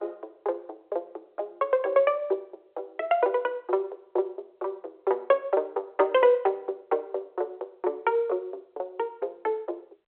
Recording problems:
phone line; 320 Hz to 3.6 kHz, G.711

